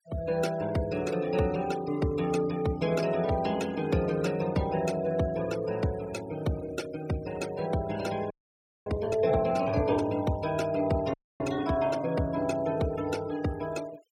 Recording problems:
denoising artefacts; signal-to-artefact ratio 17 dB
frozen audio; at 8.5 s for 0.5 s and at 11 s

